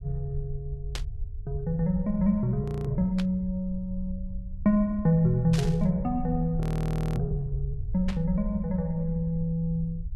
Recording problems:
rumble; below 72 Hz, SNR 10 dB
burst of static; 4 times, first at 1 s; peak -4 dB vs average level
audio freezing; at 2.5 s and at 6.5 s for 0.5 s

